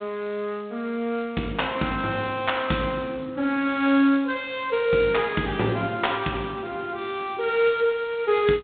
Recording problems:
phone line; 130 Hz to 3.7 kHz, G.726

